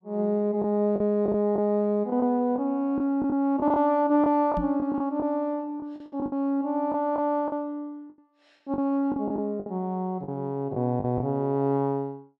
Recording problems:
lost packets; 9% of the sound replaced, filled with the last packet
microphone bump; at 4.5 s; peak -2 dB vs average level

